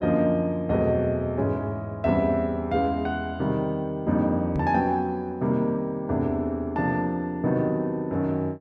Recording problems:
knock on the microphone; at 4.5 s; peak 0 dB vs average level

